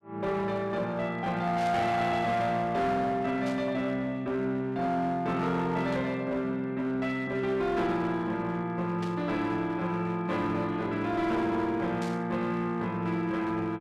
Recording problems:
distortion; hard clipping, uneven, signal-to-distortion ratio 11 dB
static burst; 5 times, first at 1.5 s; peak -10 dB vs average level

